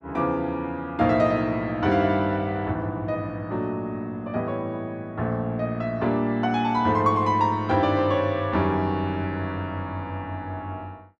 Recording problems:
none

